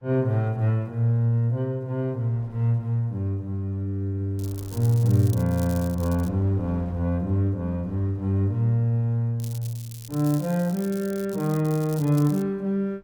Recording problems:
wind noise; below 360 Hz, SNR 27 dB
crackle; from 4.5 to 6.5 s and from 9.5 to 12 s; loose cable, SNR 18 dB

